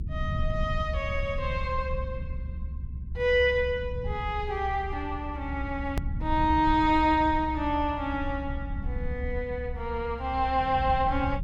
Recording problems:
low-frequency rumble; below 90 Hz, SNR 7 dB
click at an edit; at 6 s

